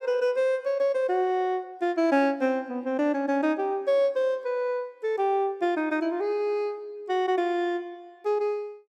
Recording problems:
none

